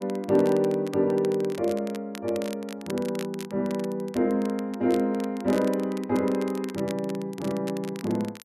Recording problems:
crackling; vinyl, SNR 18 dB

